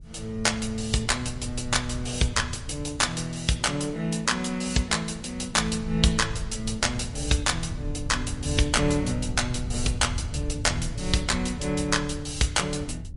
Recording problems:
codec artefacts; MP3, log-spectral distance 4 dB, nothing above 11 kHz
wind noise; below 110 Hz, SNR 10 dB

